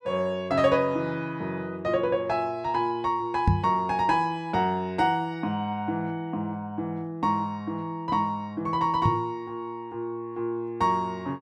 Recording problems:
microphone bump; at 3.5 s and at 9 s; peak +8 dB vs average level

